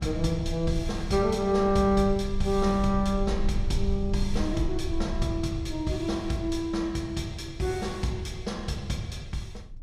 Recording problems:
low-frequency rumble; below 58 Hz, SNR 8 dB

